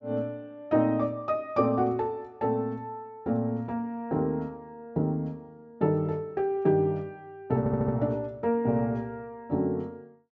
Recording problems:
treble cut off; nothing above 8 kHz
audio stuttering; at 7.5 s

